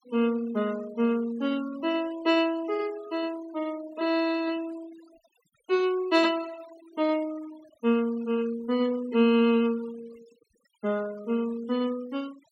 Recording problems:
noise reduction artefacts; signal-to-artefact ratio 23 dB

